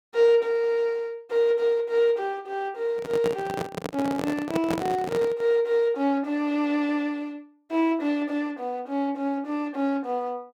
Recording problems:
handling noise; from 3 to 5.5 s; peak +1 dB vs average level

